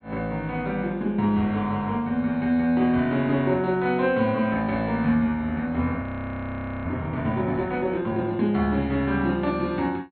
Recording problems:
treble cut off; nothing above 4.3 kHz
audio freezing; at 6 s for 1 s

